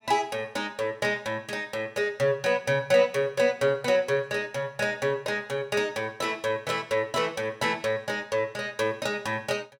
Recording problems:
none

